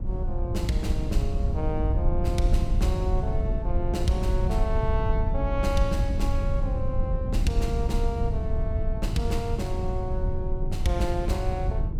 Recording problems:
rumble; below 88 Hz, SNR -3 dB

